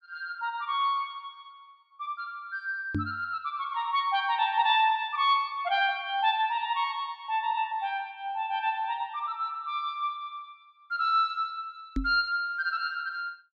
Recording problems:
knock on the microphone; at 3 s and at 12 s; peak +2 dB vs average level

